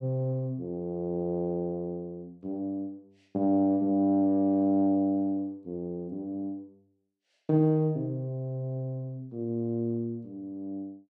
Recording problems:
none

